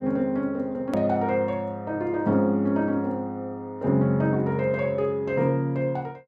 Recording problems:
edit click; at 1 s

